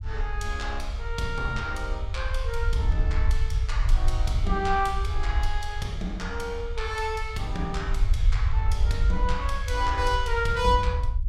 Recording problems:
rumble; below 64 Hz, SNR -1 dB

